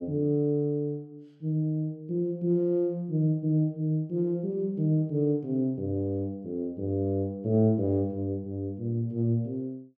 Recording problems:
none

